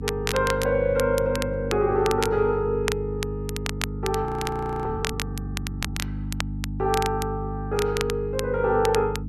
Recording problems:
electrical hum; 50 Hz, harmonics up to 300 Hz, SNR 7 dB
crackling; vinyl, SNR 9 dB
frozen audio; at 4.5 s for 0.5 s

